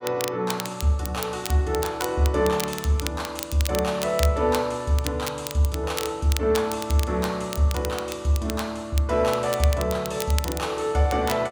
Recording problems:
crackle; vinyl, SNR 11 dB

